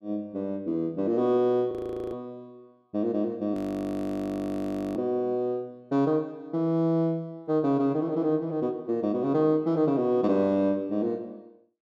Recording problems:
frozen audio; at 1.5 s and at 3.5 s for 1.5 s

